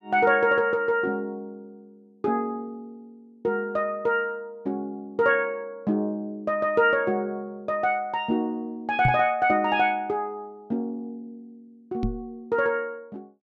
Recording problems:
microphone thump; at 9 s and at 12 s; peak +4 dB vs average level

